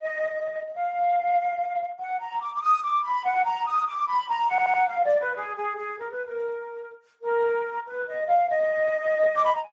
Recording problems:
lossy compression; Speex, log-spectral distance 2 dB
stutter; at 4.5 s

